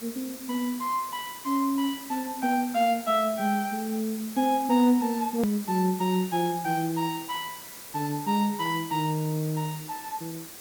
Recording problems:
hiss; slope -1 dB per octave, SNR 13 dB
click at an edit; at 5.5 s

